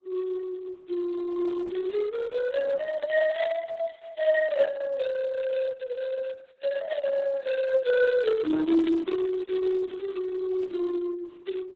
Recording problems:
lossy compression; Opus, then Opus, log-spectral distance 3 dB, nothing above 7.6 kHz

